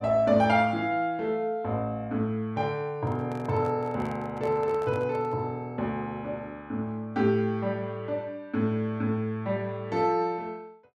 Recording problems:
handling noise; from 3 to 5.5 s; peak -10 dB vs average level

